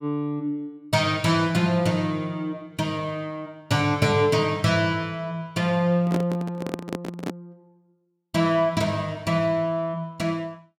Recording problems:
handling noise; from 6 to 7.5 s; peak 0 dB vs average level

